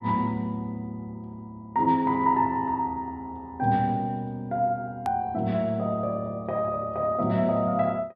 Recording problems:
treble missing; nothing above 5.5 kHz
click at an edit; at 5 s

